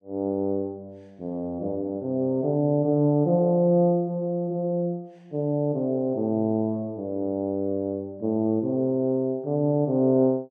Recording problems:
none

